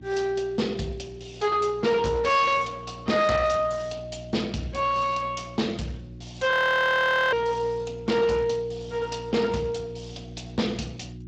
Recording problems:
lossy codec; Speex, log-spectral distance 4 dB, nothing above 19.5 kHz
distorted audio; hard clipping, signal-to-distortion ratio 11 dB
hum; 60 Hz, harmonics up to 360 Hz, SNR 17 dB
frozen audio; at 6.5 s for 1 s

